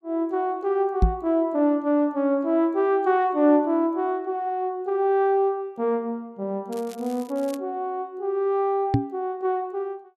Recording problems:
knock on the microphone; at 1 s and at 9 s; peak +8 dB vs average level
crackling; at 6.5 s; loose cable, SNR 23 dB

